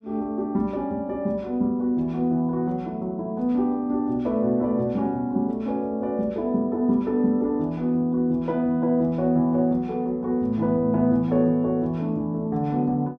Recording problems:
none

